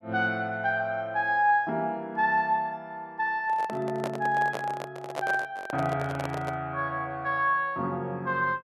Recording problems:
handling noise; from 3.5 to 6.5 s; peak -1 dB vs average level

